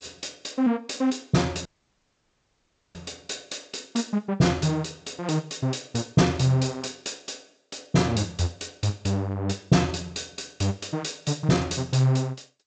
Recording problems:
lossy compression; G.722, log-spectral distance 8 dB, nothing above 7.6 kHz
dropout; at 1.5 s for 1.5 s

